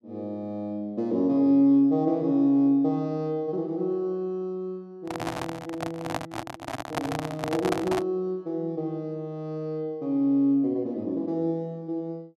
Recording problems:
handling noise; from 5 to 8 s; peak +3 dB vs average level

